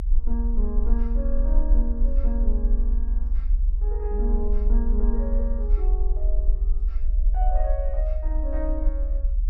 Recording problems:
rumble; below 42 Hz, strongest tone 36 Hz, SNR -9 dB

